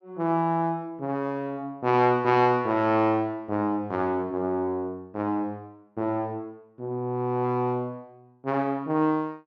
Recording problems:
none

